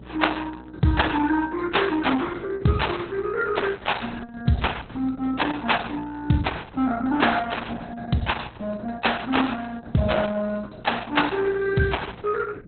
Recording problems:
lossy compression; Opus, log-spectral distance 7 dB, nothing above 4 kHz
electrical hum; 60 Hz, harmonics up to 600 Hz, SNR 20 dB

